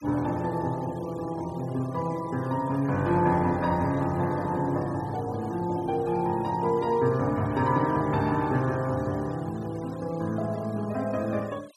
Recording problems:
denoising artefacts; signal-to-artefact ratio 23 dB

